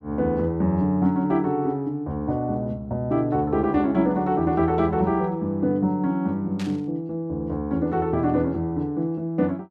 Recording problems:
static burst; at 6.5 s; peak -10 dB vs average level

